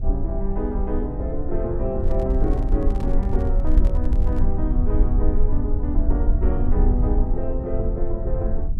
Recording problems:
low-frequency rumble; below 56 Hz, SNR -4 dB
microphone handling noise; from 2 to 4.5 s; peak -5 dB vs average level

